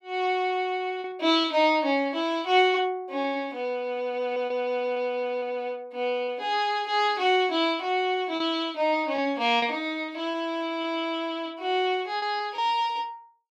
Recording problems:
packet loss; 3% of the sound replaced, filled with repeated pitch periods

